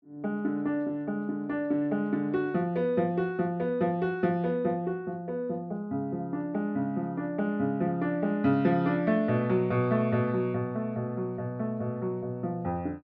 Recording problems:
none

